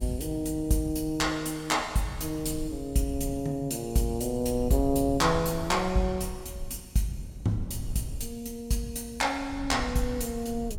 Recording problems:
wind noise; below 98 Hz, SNR 12 dB

